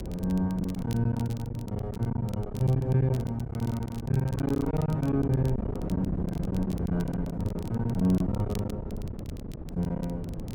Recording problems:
hum; 60 Hz, harmonics up to 600 Hz, SNR 22 dB
wind noise; below 260 Hz, SNR 8 dB
crackle; vinyl, SNR 23 dB
packet loss; 16% of the sound replaced, filled with silence

